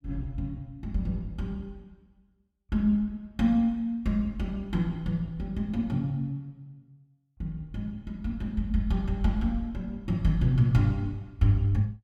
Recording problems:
none

